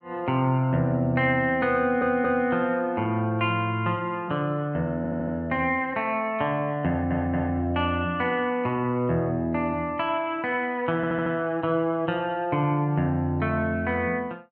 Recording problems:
treble missing; nothing above 5.5 kHz
audio stuttering; 4 times, first at 2 s

